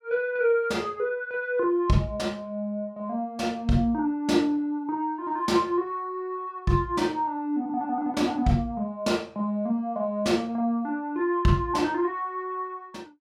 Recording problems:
none

